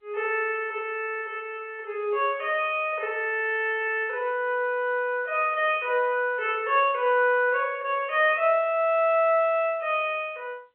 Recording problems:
telephone audio; 280 Hz to 3.3 kHz, G.711

